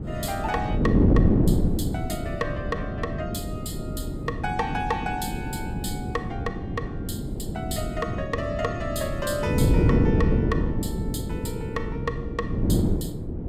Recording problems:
wind on the microphone; below 280 Hz, SNR -5 dB

